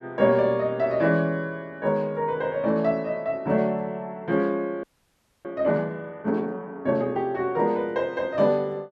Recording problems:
audio freezing; at 5 s for 0.5 s

